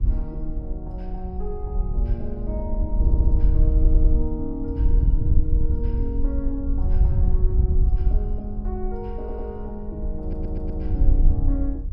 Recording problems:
wind on the microphone; below 62 Hz, SNR -9 dB
stutter; 4 times, first at 3 s

